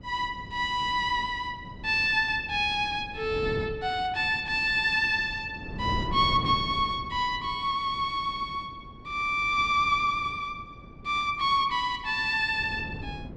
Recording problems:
wind on the microphone; below 290 Hz, SNR 15 dB

